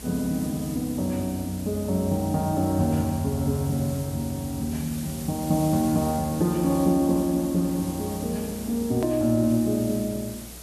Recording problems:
electrical hum; 60 Hz, harmonics up to 720 Hz, SNR 22 dB
hiss; SNR 14 dB
hard cut with a click; at 9 s

